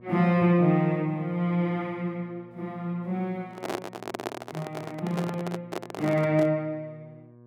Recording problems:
electrical hum; 60 Hz, harmonics up to 1.2 kHz, SNR 25 dB
handling noise; from 3.5 to 6.5 s; peak 0 dB vs average level

